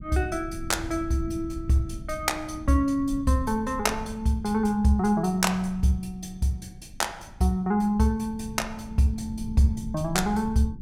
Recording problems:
rumble; below 140 Hz, SNR 14 dB

